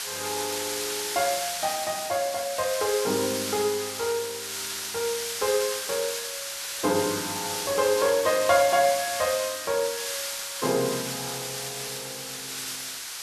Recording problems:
background hiss; slope +3 dB per octave, SNR 4 dB

